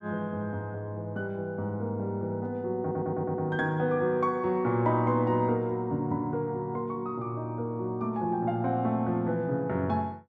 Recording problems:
stutter; at 3 s

